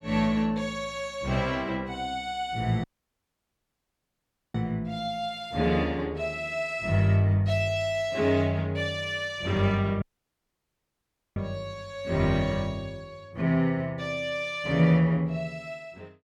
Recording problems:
audio cutting out; at 3 s for 1.5 s and at 10 s for 1.5 s

